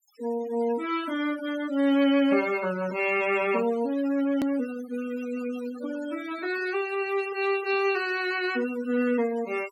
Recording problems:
noise reduction artefacts; signal-to-artefact ratio 16 dB
hard cut with a click; at 4.5 s

